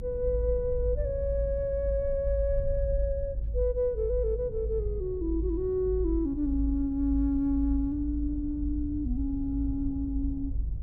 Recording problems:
low-frequency rumble; below 56 Hz, strongest tone 52 Hz, SNR 4 dB
wind on the microphone; below 140 Hz, SNR 15 dB

